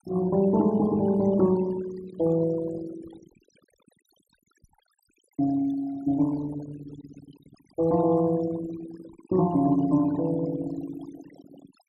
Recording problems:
denoising artefacts; signal-to-artefact ratio 17 dB

